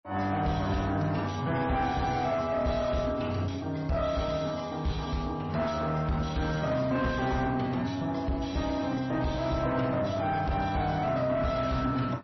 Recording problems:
lossy codec; AAC, then MP3, log-spectral distance 4 dB, nothing above 5.8 kHz
distorted audio; soft clipping, signal-to-distortion ratio 11 dB

